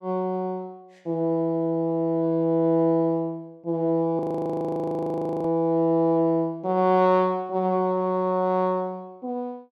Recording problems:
audio freezing; at 4 s for 1.5 s

